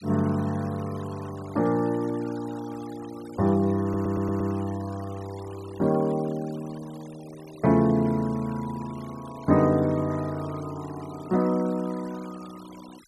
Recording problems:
denoising artefacts; signal-to-artefact ratio 22 dB
audio stuttering; at 4 s

